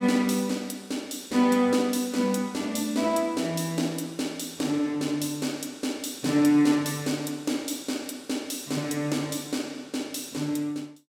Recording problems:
none

